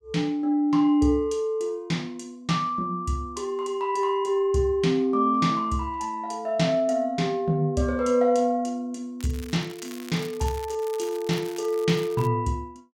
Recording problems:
crackling; from 9 to 12 s; loose cable, SNR 19 dB

